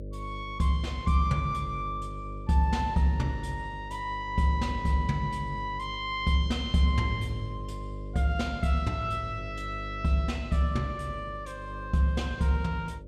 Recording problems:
hum; 50 Hz, harmonics up to 600 Hz, SNR 12 dB

